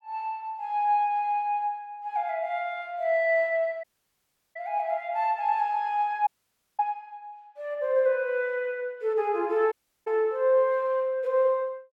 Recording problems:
audio cutting out; at 4 s for 0.5 s, at 6.5 s for 0.5 s and at 9.5 s

